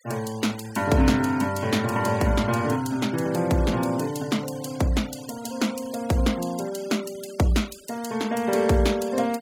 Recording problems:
noise reduction artefacts; signal-to-artefact ratio 19 dB

